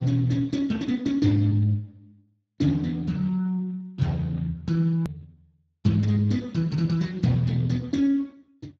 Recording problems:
lossy codec; Speex, log-spectral distance 2 dB, nothing above 13.1 kHz
hard cut with a click; at 5 s

